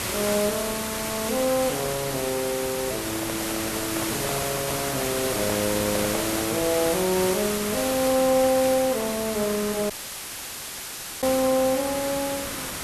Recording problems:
hiss; slope -2 dB per octave, SNR 2 dB
handling noise; from 3 to 6.5 s; peak -2 dB vs average level
audio cutting out; at 10 s for 1.5 s

